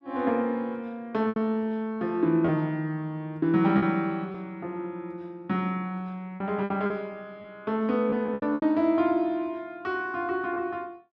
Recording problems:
lost packets; 5% of the sound replaced, filled with repeated pitch periods

